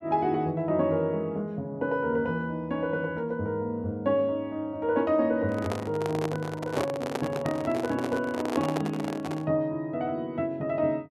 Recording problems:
handling noise; from 5.5 to 9.5 s; peak +2 dB vs average level

